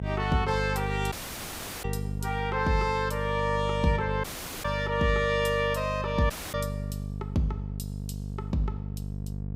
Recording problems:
hum; 50 Hz, harmonics up to 500 Hz, SNR 6 dB
audio cutting out; at 1 s for 0.5 s, at 4 s and at 6.5 s

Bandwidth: 15.5 kHz